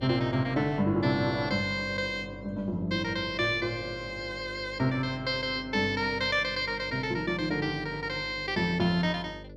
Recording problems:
hum; 50 Hz, harmonics up to 600 Hz, SNR 17 dB

